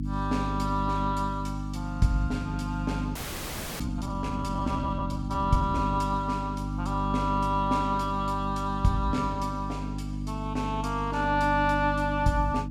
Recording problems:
hum; 50 Hz, harmonics up to 300 Hz, SNR 4 dB
audio freezing; at 3 s for 0.5 s

